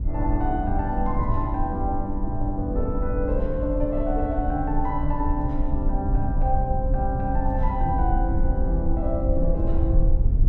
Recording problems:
low-frequency rumble; below 62 Hz, SNR 0 dB
wind on the microphone; below 110 Hz, SNR 9 dB

